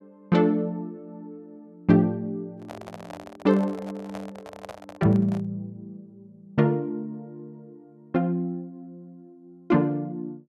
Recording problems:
handling noise; from 2.5 to 5.5 s; peak -9 dB vs average level

